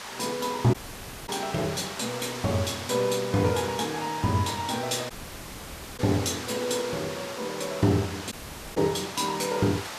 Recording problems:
hiss; SNR 9 dB
audio cutting out; at 0.5 s for 0.5 s, at 5 s for 1 s and at 8.5 s

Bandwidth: 14.5 kHz